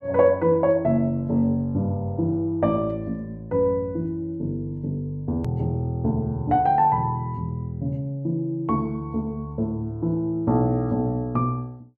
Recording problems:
edit click; at 5.5 s

